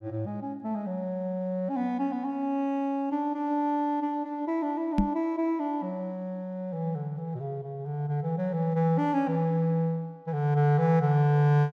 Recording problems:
microphone bump; at 5 s; peak +7 dB vs average level

